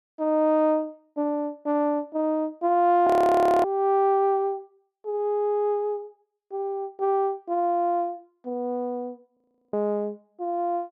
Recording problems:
frozen audio; at 3 s for 0.5 s and at 9.5 s

